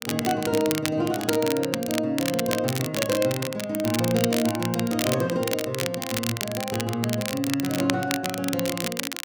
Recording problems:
crackle; vinyl, SNR 5 dB

